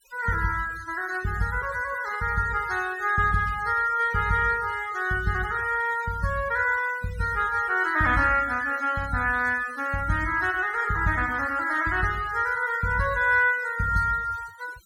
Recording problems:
denoising artefacts; signal-to-artefact ratio 19 dB

